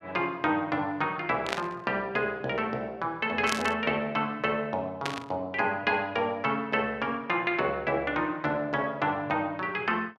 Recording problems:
burst of static; at 1.5 s, at 3.5 s and at 5 s; peak +3 dB vs average level

